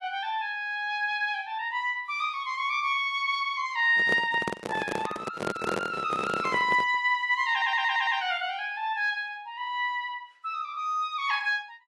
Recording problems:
codec artefacts; AAC, log-spectral distance 2 dB
handling noise; from 4 to 7 s; peak -1 dB vs average level
stutter; at 7.5 s

